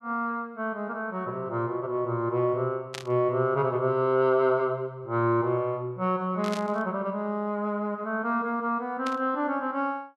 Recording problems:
static burst; at 3 s, at 6.5 s and at 9 s; peak -4 dB vs average level

